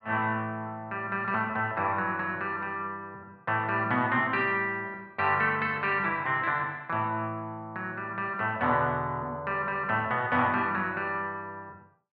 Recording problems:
none

